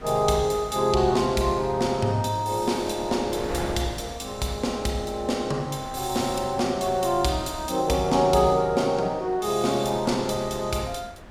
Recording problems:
wind on the microphone; below 1 kHz, SNR 16 dB

